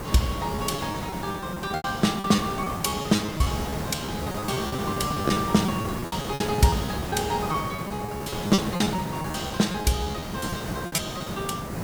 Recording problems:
background hiss; SNR 4 dB
lost packets; 15% of the sound replaced, filled with repeated pitch periods

